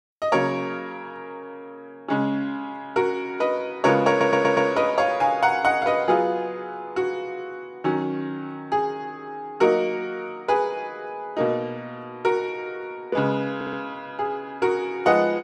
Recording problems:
audio stuttering; at 4 s and at 14 s

